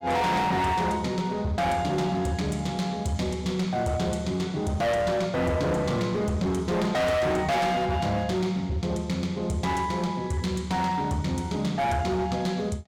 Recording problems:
distortion; hard clipping, uneven, signal-to-distortion ratio 7 dB

